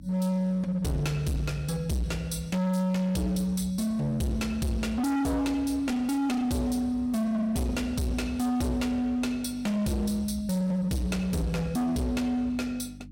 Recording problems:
distortion; hard clipping, signal-to-distortion ratio 6 dB
mains hum; 50 Hz, harmonics up to 550 Hz, SNR 20 dB

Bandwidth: 16.5 kHz